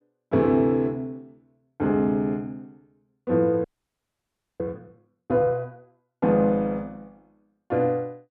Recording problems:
audio freezing; at 3.5 s for 1 s

